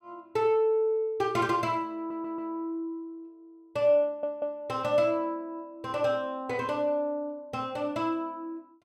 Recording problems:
audio stuttering; at 2 s and at 4 s

